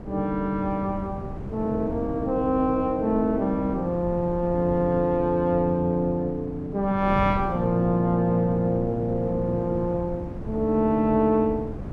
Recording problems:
wind on the microphone; below 280 Hz, SNR 11 dB

